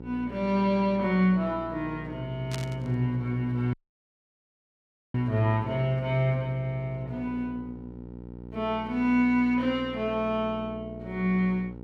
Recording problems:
hum; 60 Hz, harmonics up to 960 Hz, SNR 14 dB
burst of static; at 2.5 s; peak -4 dB vs average level
dropout; at 3.5 s for 1.5 s

